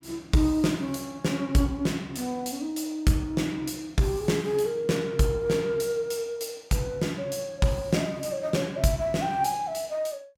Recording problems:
none

